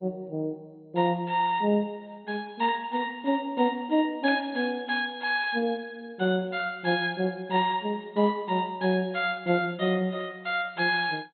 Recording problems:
lossy compression; MP2, log-spectral distance 3 dB, nothing above 3.8 kHz

